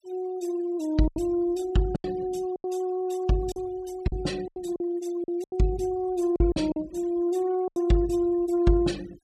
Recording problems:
denoising artefacts; signal-to-artefact ratio 22 dB
lost packets; 8% of the sound replaced, filled with silence

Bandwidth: 15 kHz